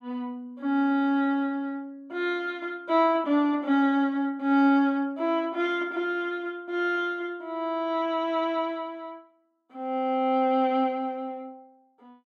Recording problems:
none

